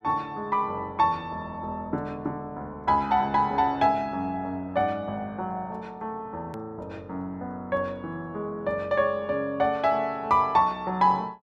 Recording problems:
edit click; at 6.5 s

